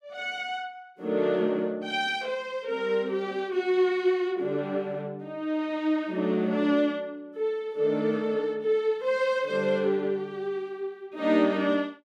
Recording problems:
none

